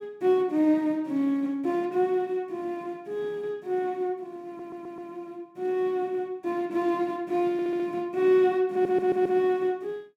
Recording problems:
audio stuttering; at 4.5 s, at 7.5 s and at 8.5 s

